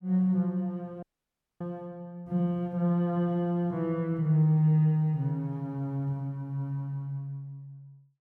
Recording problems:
audio cutting out; at 1 s for 0.5 s

